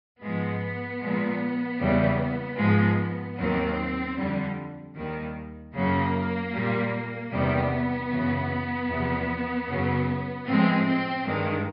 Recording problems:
treble cut off; nothing above 5.5 kHz

